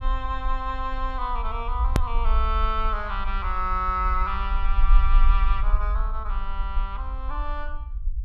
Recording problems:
low-frequency rumble; below 46 Hz, SNR -1 dB
click at an edit; at 2 s

